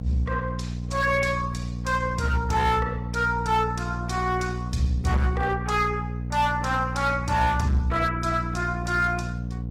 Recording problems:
lossy compression; Opus, log-spectral distance 3 dB, nothing above 16.6 kHz
distortion; hard clipping, signal-to-distortion ratio 11 dB
hum; 60 Hz, harmonics up to 540 Hz, SNR 6 dB

